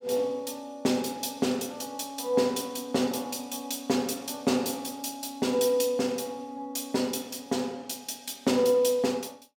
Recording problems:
none

